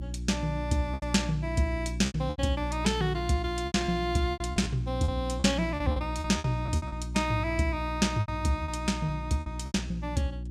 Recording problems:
hum; 60 Hz, harmonics up to 360 Hz, SNR 6 dB
lost packets; 11% of the sound replaced, filled with repeated pitch periods

